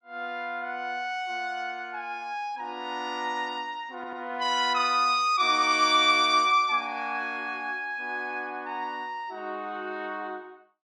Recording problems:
stutter; at 4 s

